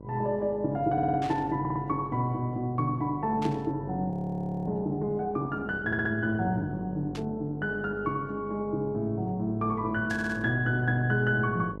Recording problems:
electrical hum; 50 Hz, harmonics up to 1.1 kHz, SNR 14 dB
audio stuttering; 4 times, first at 1 s
burst of static; 4 times, first at 1 s; peak -9 dB vs average level
audio freezing; at 4 s for 0.5 s

